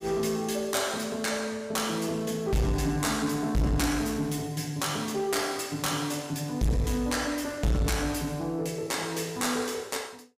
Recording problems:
distorted audio; soft clipping, signal-to-distortion ratio 6 dB

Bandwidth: 15.5 kHz